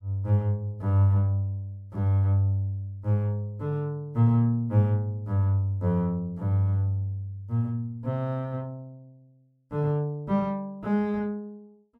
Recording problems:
none

